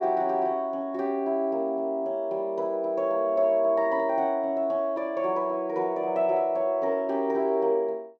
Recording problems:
none

